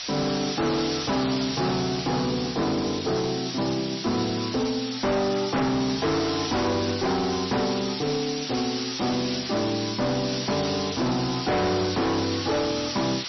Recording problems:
lossy compression; MP3, log-spectral distance 21 dB, nothing above 5.8 kHz
distortion; hard clipping, signal-to-distortion ratio 6 dB
background hiss; SNR 6 dB

